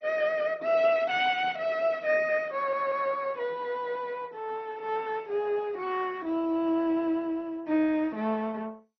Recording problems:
codec artefacts; MP2, log-spectral distance 3 dB, nothing above 5.8 kHz
stutter; at 2.5 s

